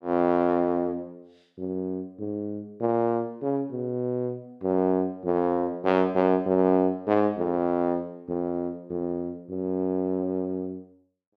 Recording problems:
none

